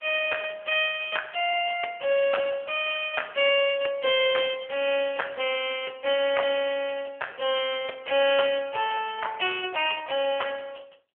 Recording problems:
phone line; 320 Hz to 3.3 kHz, AMR-NB

